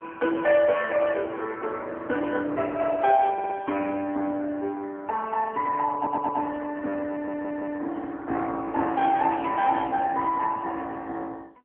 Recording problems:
telephone audio; 240 Hz to 3 kHz, AMR-NB
audio stuttering; at 3.5 s, at 6 s and at 7 s

